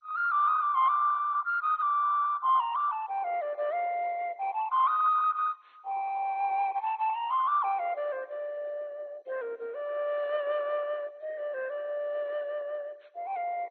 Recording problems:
lossy compression; MP2, then MP2, log-spectral distance 3 dB

